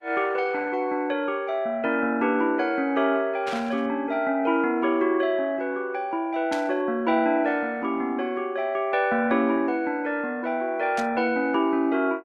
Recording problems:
lossy codec; Opus, log-spectral distance 2 dB
static burst; at 3.5 s, at 6.5 s and at 11 s; peak -7 dB vs average level

